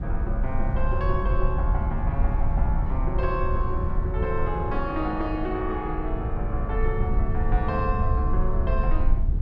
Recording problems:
low-frequency rumble; below 72 Hz, SNR -3 dB
wind noise; below 370 Hz, SNR 17 dB

